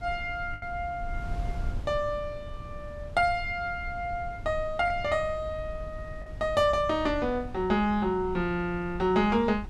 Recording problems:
wind noise; below 92 Hz, SNR 12 dB
packet loss; 1.5% of the sound replaced, filled with the last packet

